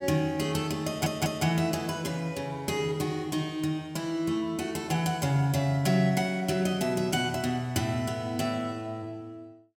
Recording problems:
audio stuttering; at 1 s

